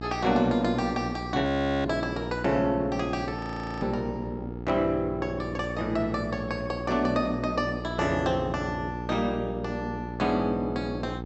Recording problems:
treble missing; nothing above 7.8 kHz
hum; 60 Hz, harmonics up to 960 Hz, SNR 8 dB
audio freezing; at 1.5 s and at 3.5 s

